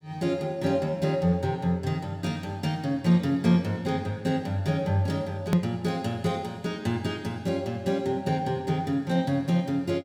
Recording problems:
hard cut with a click; at 5.5 s

